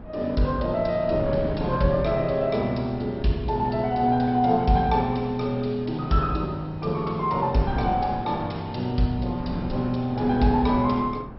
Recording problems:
lossy compression; MP2, log-spectral distance 2 dB, nothing above 5.5 kHz
wind on the microphone; below 340 Hz, SNR 12 dB

